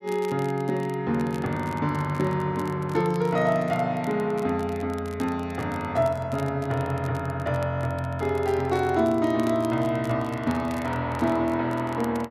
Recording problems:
crackle; vinyl, SNR 23 dB

